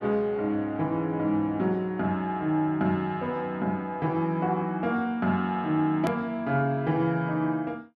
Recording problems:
edit click; at 6 s

